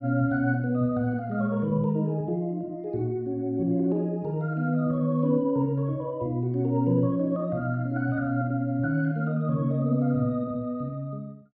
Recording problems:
none

